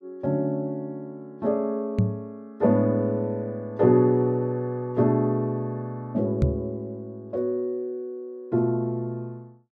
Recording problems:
knock on the microphone; at 2 s and at 6.5 s; peak +7 dB vs average level

